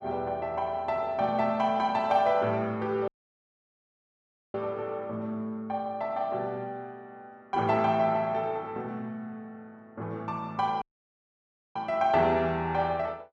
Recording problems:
dropout; at 3 s for 1.5 s and at 11 s for 1 s

